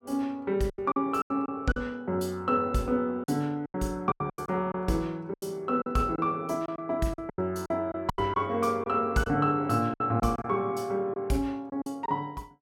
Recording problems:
packet loss; 10% of the sound replaced, filled with silence

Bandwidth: 16.5 kHz